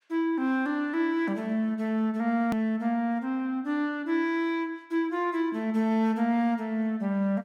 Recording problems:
hard cut with a click; at 2.5 s

